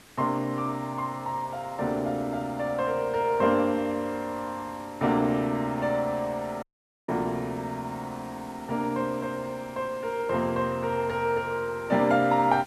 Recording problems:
hiss; SNR 22 dB
audio cutting out; at 6.5 s

